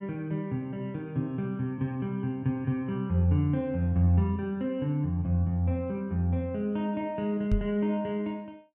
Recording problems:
microphone bump; at 7.5 s; peak +4 dB vs average level

